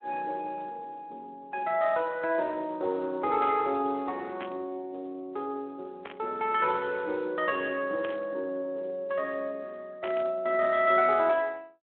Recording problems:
telephone audio; 240 Hz to 3.3 kHz, Speex
static burst; 4 times, first at 4.5 s; peak -6 dB vs average level

